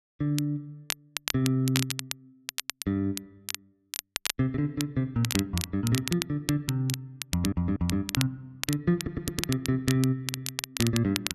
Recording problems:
crackling; vinyl, SNR 6 dB
audio stuttering; at 7.5 s, at 9 s and at 10 s

